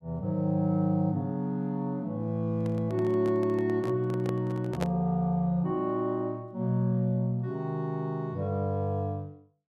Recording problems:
handling noise; from 2.5 to 5 s; peak 0 dB vs average level

